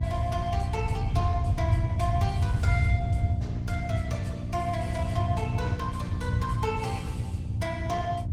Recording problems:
codec artefacts; Opus, log-spectral distance 2 dB, nothing above 19 kHz
electrical hum; 60 Hz, harmonics up to 660 Hz, SNR 5 dB
rumble; below 110 Hz, SNR -5 dB

